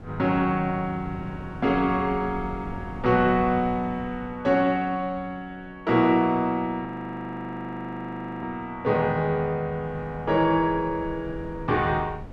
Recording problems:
wind on the microphone; below 240 Hz, SNR 16 dB
frozen audio; at 7 s for 1.5 s

